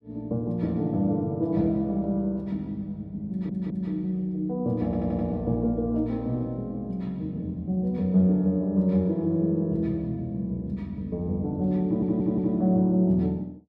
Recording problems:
stutter; at 3.5 s, at 5 s and at 12 s

